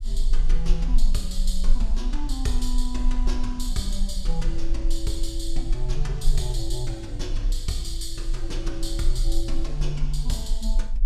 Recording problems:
low-frequency rumble; below 32 Hz, strongest tone 20 Hz, SNR -3 dB

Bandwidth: 14.5 kHz